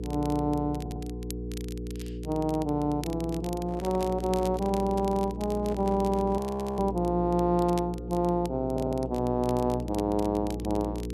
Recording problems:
hum; 60 Hz, harmonics up to 480 Hz, SNR 8 dB
crackle; vinyl, SNR 20 dB
audio stuttering; at 1 s and at 8.5 s
handling noise; from 3.5 to 6.5 s; peak -9 dB vs average level
audio freezing; at 6.5 s

